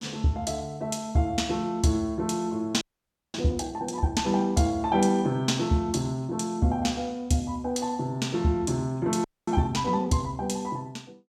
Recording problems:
audio freezing; at 3 s for 0.5 s and at 9 s

